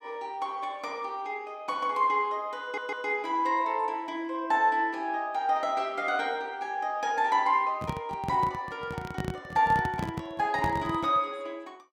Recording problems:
audio stuttering; at 2.5 s
handling noise; from 7.5 to 11 s; peak 0 dB vs average level

